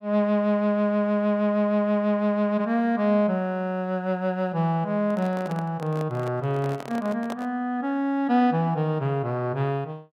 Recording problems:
microphone handling noise; from 5 to 7.5 s; peak -7 dB vs average level

